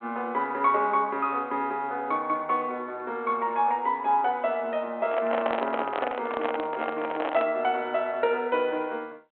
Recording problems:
telephone audio; 260 Hz to 3.3 kHz, G.726
microphone handling noise; from 5 to 7.5 s; peak +2 dB vs average level

